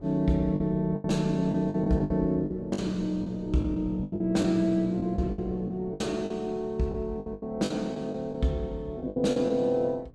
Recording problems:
wind noise; below 280 Hz, SNR 21 dB
packet loss; 12% of the sound replaced, filled with the last packet

